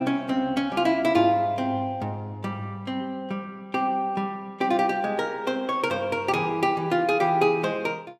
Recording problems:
none

